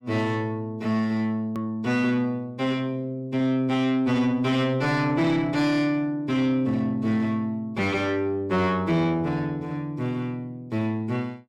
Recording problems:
distorted audio; soft clipping, signal-to-distortion ratio 12 dB
hard cut with a click; at 1.5 s

